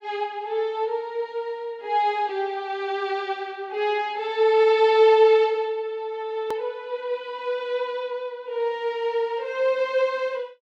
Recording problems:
edit click; at 6.5 s

